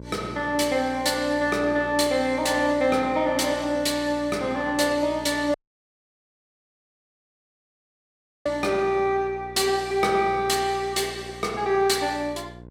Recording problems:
hum; 60 Hz, harmonics up to 1 kHz, SNR 19 dB
dropout; at 5.5 s for 3 s

